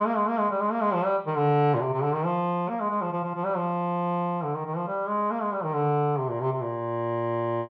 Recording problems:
none

